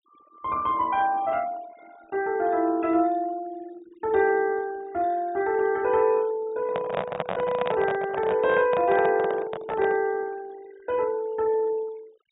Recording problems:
low-pass filter; nothing above 4 kHz
denoising artefacts; signal-to-artefact ratio 25 dB
microphone handling noise; from 6.5 to 10 s; peak 0 dB vs average level

